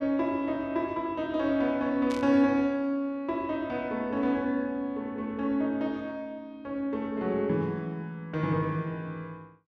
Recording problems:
static burst; at 2 s; peak -9 dB vs average level

